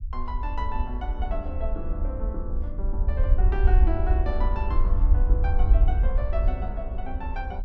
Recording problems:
rumble; below 58 Hz, SNR -8 dB

